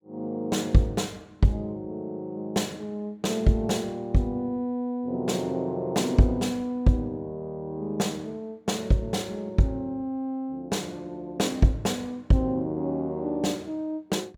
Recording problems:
none

